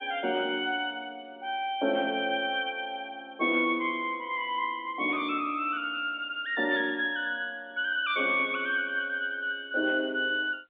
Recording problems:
telephone audio; 240 Hz to 3.6 kHz, G.711

